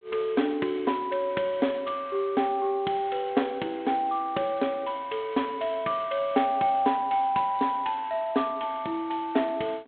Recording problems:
phone line; 190 Hz to 3.6 kHz, G.726

